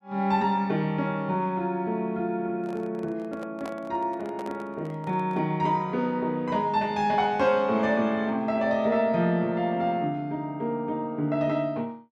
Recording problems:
handling noise; from 2.5 to 5.5 s; peak -8 dB vs average level

